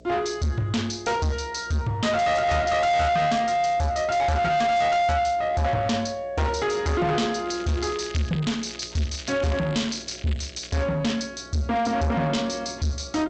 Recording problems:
lossy compression; G.722, log-spectral distance 6 dB
distortion; soft clipping, signal-to-distortion ratio 6 dB
electrical hum; 60 Hz, harmonics up to 660 Hz, SNR 25 dB
crackle; from 7.5 to 11 s; loose cable, SNR 17 dB

